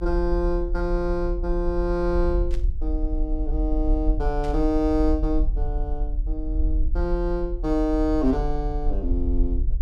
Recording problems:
rumble; below 46 Hz, SNR 2 dB
burst of static; at 2.5 s and at 4.5 s; peak -13 dB vs average level

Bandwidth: 13.5 kHz